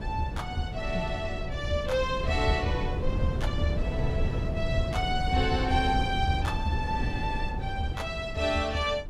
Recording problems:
wind noise; below 140 Hz, SNR 3 dB

